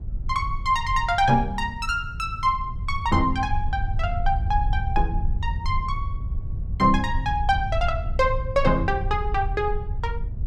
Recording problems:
rumble; below 82 Hz, SNR 5 dB

